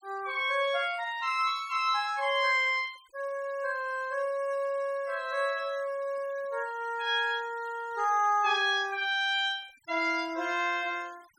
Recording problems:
denoising artefacts; signal-to-artefact ratio 26 dB

